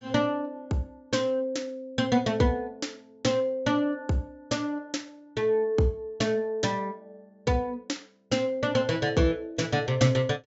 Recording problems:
treble missing; nothing above 8 kHz

